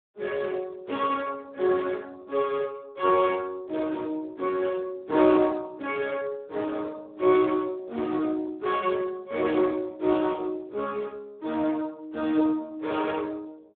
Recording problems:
telephone audio; 240 Hz to 2.8 kHz, Speex

